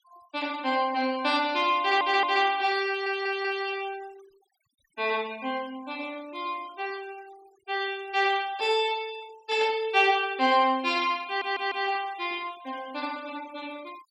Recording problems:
noise reduction artefacts; signal-to-artefact ratio 23 dB
stutter; at 2 s, at 3 s and at 11 s

